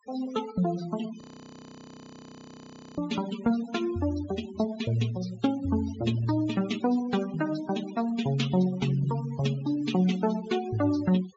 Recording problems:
treble cut off; nothing above 8 kHz
denoising artefacts; signal-to-artefact ratio 15 dB
frozen audio; at 1 s for 2 s

